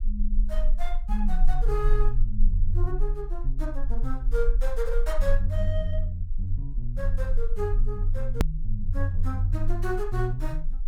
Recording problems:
rumble; below 34 Hz, strongest tone 20 Hz, SNR -2 dB
hard cut with a click; at 8.5 s

